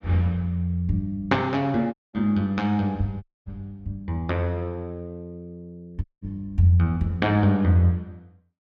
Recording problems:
audio cutting out; at 2 s, at 3 s and at 6 s

